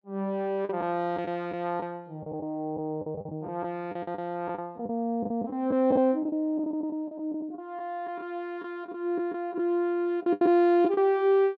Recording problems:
lost packets; 10% of the sound replaced, filled with the last packet

